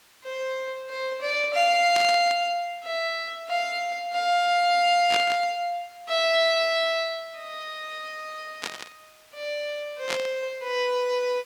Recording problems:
background hiss; slope 0 dB per octave, SNR 29 dB
static burst; 4 times, first at 2 s; peak +1 dB vs average level

